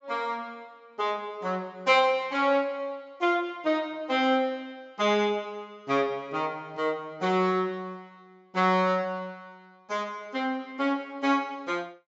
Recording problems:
low-pass filter; nothing above 8 kHz

